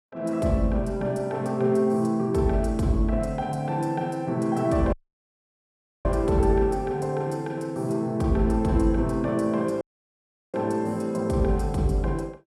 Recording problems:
audio cutting out; at 5 s for 1 s and at 10 s for 0.5 s

